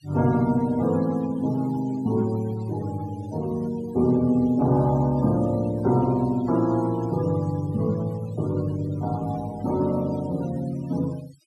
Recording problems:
noise reduction artefacts; signal-to-artefact ratio 22 dB

